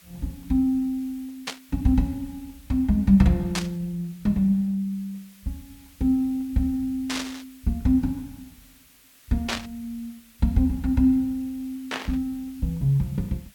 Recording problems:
hiss; SNR 27 dB
burst of static; 5 times, first at 1.5 s; peak +1 dB vs average level

